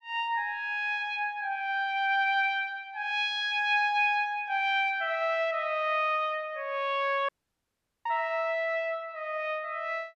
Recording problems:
dropout; at 7.5 s for 1 s

